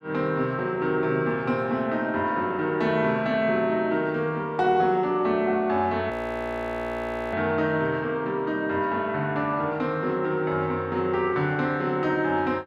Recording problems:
audio freezing; at 6 s for 1 s

